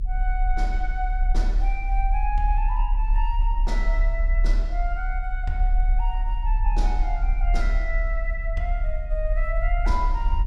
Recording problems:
low-frequency rumble; below 38 Hz, strongest tone 36 Hz, SNR -6 dB

